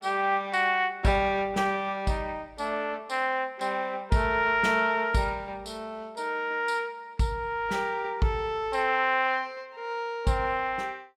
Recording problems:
none

